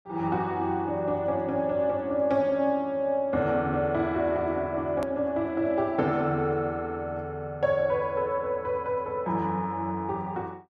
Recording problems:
click at an edit; at 5 s

